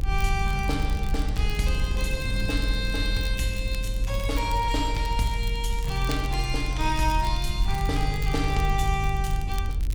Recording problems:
low-frequency rumble; below 48 Hz, strongest tone 42 Hz, SNR 2 dB
wind on the microphone; below 290 Hz, SNR 15 dB
crackling; vinyl, SNR 18 dB

